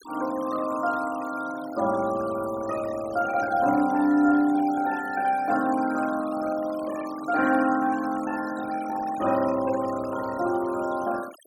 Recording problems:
noise reduction artefacts; signal-to-artefact ratio 17 dB

